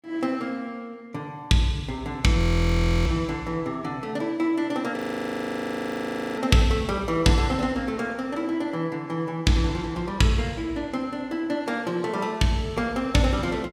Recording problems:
audio freezing; at 2.5 s for 0.5 s and at 5 s for 1.5 s

